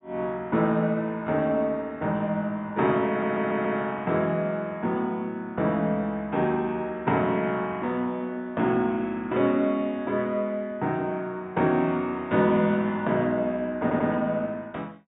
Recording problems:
treble missing; nothing above 4 kHz
audio stuttering; at 3 s and at 14 s

